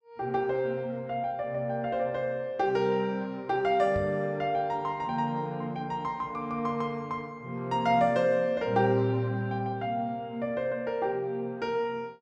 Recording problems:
microphone thump; at 4 s; peak -3 dB vs average level

